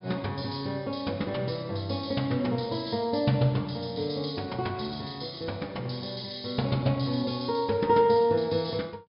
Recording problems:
treble missing; nothing above 5.5 kHz

